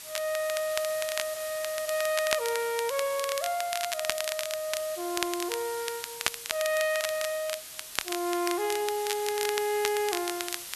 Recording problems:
hiss; slope +2 dB per octave, SNR 8 dB
crackle; vinyl, SNR 5 dB

